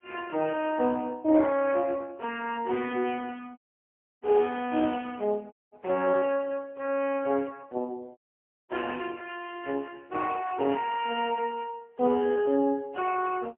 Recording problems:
phone line; 260 Hz to 3.4 kHz, AMR-NB, then MP3
audio cutting out; at 3.5 s for 0.5 s, at 5.5 s and at 8 s for 0.5 s

